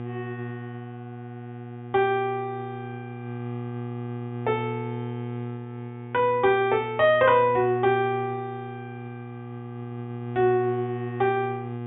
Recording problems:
treble cut off; nothing above 3.6 kHz
electrical hum; 60 Hz, harmonics up to 1.2 kHz, SNR 11 dB

